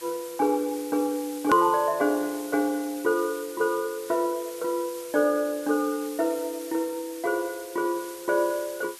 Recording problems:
hiss; slope +2 dB per octave, SNR 15 dB
hard cut with a click; at 1.5 s

